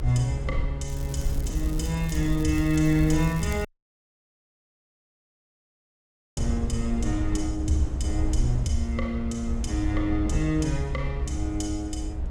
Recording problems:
low-frequency rumble; below 72 Hz, SNR 3 dB
crackling; from 1 to 3.5 s; loose cable, SNR 18 dB
audio cutting out; at 3.5 s for 2.5 s

